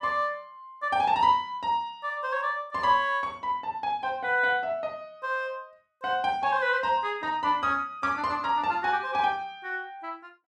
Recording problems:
none

